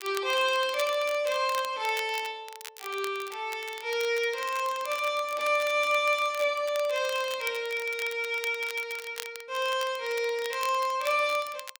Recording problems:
crackle; vinyl, SNR 15 dB

